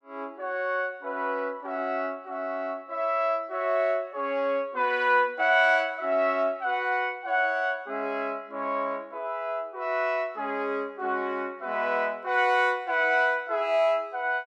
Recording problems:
none

